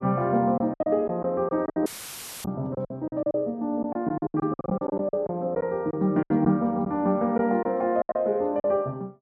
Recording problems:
packet loss; 13% of the sound replaced, filled with silence
audio cutting out; at 2 s for 0.5 s; filled with static

